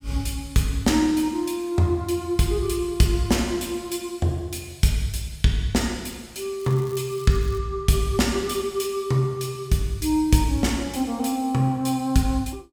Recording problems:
crackling; at 6.5 s; loose cable, SNR 23 dB

